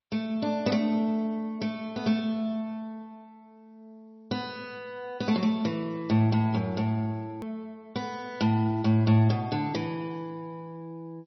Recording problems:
lossy compression; G.722, then MP3, log-spectral distance 2 dB, nothing above 5.8 kHz
edit click; at 7.5 s

